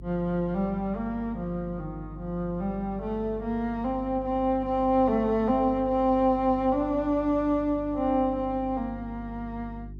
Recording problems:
hum; 50 Hz, harmonics up to 400 Hz, SNR 15 dB

